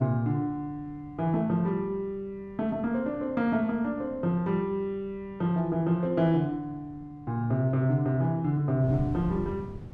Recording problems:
wind on the microphone; below 180 Hz, SNR 17 dB

